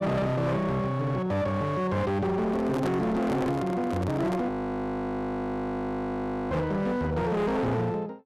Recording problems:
distortion; hard clipping, signal-to-distortion ratio 8 dB
handling noise; from 2.5 to 4.5 s; peak 0 dB vs average level
audio freezing; at 4.5 s for 2 s

